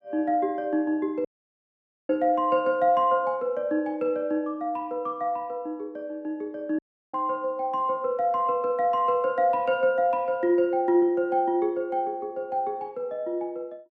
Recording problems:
dropout; at 1.5 s for 1 s and at 7 s

